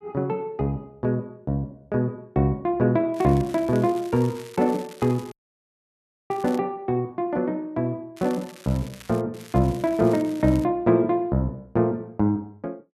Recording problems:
crackle; from 3 to 6.5 s, from 8 to 9 s and from 9.5 to 11 s; loose cable, SNR 21 dB
audio cutting out; at 5.5 s for 1 s

